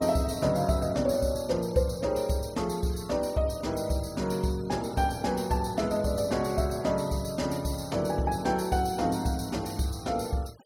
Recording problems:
denoising artefacts; signal-to-artefact ratio 22 dB

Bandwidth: 16.5 kHz